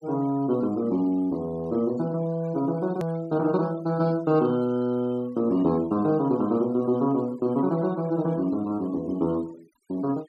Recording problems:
denoising artefacts; signal-to-artefact ratio 26 dB
hard cut with a click; at 3 s

